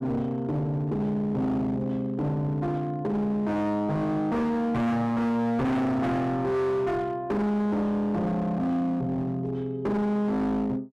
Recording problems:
distortion; hard clipping, signal-to-distortion ratio 7 dB

